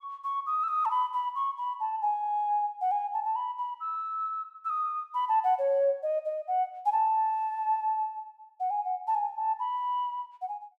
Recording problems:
none

